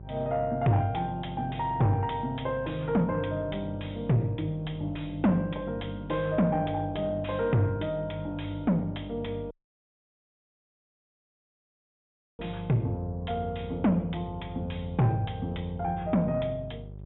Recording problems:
treble cut off; nothing above 3.7 kHz
distortion; soft clipping, signal-to-distortion ratio 10 dB
electrical hum; 50 Hz, harmonics up to 600 Hz, SNR 14 dB
dropout; at 9.5 s for 3 s

